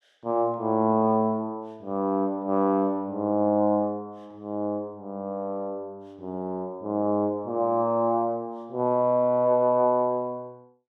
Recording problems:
none

